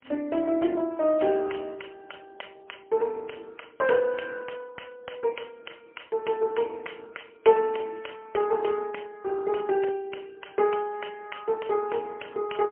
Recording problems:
phone line; 220 Hz to 2.9 kHz, AMR-NB, then MP3

